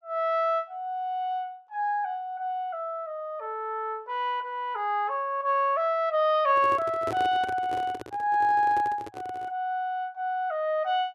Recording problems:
handling noise; from 6.5 to 9.5 s; peak -3 dB vs average level

